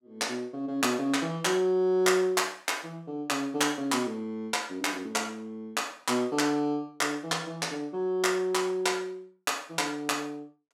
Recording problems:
none

